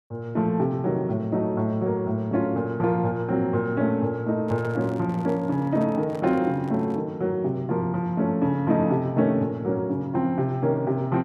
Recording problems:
microphone handling noise; from 4.5 to 7 s; peak -10 dB vs average level

